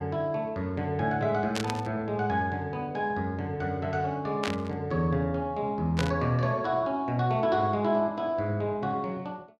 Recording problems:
static burst; at 1.5 s, at 4.5 s and at 6 s; peak +1 dB vs average level

